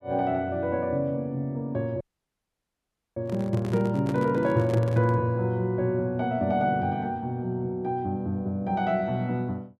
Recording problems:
dropout; at 2 s for 1 s
handling noise; from 3 to 5 s; peak -3 dB vs average level

